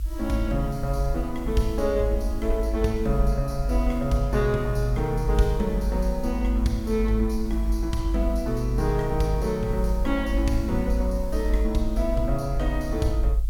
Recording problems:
hiss; slope +3 dB per octave, SNR 25 dB
rumble; below 52 Hz, strongest tone 50 Hz, SNR 2 dB

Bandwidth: 17 kHz